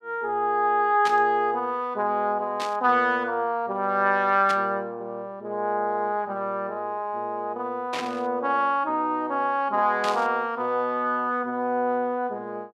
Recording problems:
burst of static; 5 times, first at 1 s; peak -3 dB vs average level

